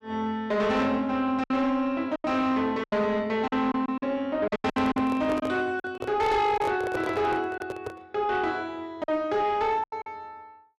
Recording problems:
distortion; soft clipping, signal-to-distortion ratio 11 dB
lost packets; 8% of the sound replaced, filled with silence
microphone handling noise; from 4.5 to 8 s; peak -1 dB vs average level

